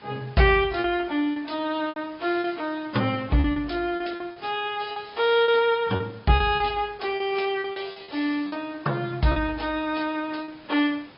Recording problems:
treble missing; nothing above 5.2 kHz
lossy compression; AAC, log-spectral distance 4 dB
background hiss; SNR 25 dB
lost packets; 8% of the sound replaced, filled with repeated pitch periods

